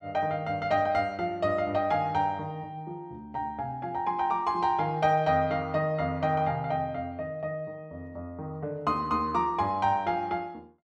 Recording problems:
none

